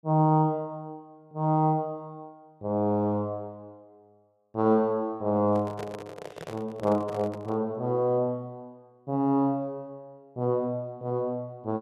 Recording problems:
microphone handling noise; from 5.5 to 7.5 s; peak -7 dB vs average level

